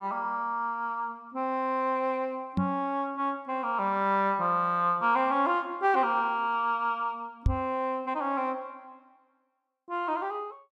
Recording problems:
microphone bump; at 2.5 s and at 7.5 s; peak +6 dB vs average level

